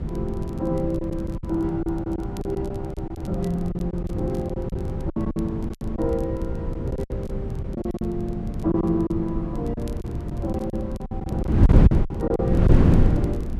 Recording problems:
wind on the microphone; below 180 Hz, SNR -2 dB
crackle; vinyl, SNR 27 dB
packet loss; 11% of the sound replaced, filled with silence

